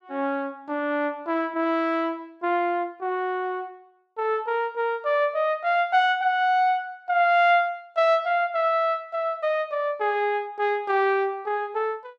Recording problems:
none

